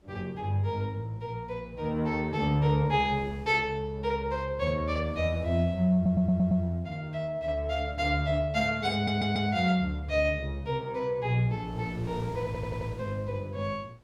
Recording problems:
wind on the microphone; below 610 Hz, SNR 21 dB
stutter; at 6 s, at 9 s and at 12 s

